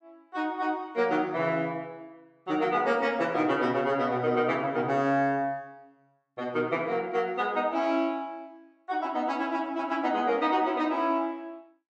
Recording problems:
none

